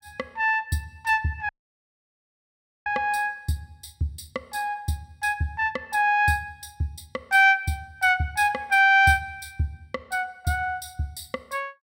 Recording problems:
audio cutting out; at 1.5 s for 1.5 s

